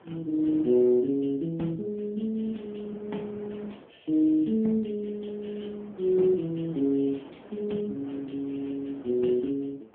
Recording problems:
phone line; 170 Hz to 3.5 kHz, AMR-NB
wind noise; below 770 Hz, SNR 20 dB

